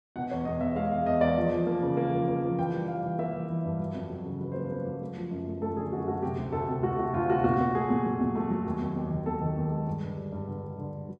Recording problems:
none

